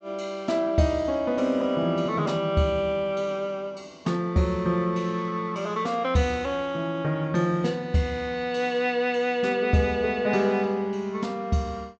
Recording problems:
low-pass filter; nothing above 8 kHz

